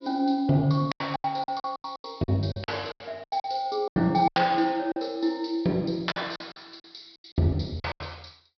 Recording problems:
treble missing; nothing above 5.5 kHz
lost packets; 16% of the sound replaced, filled with silence

